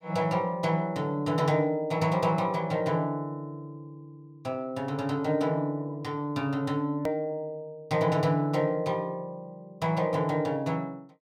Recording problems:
hard cut with a click; at 7 s

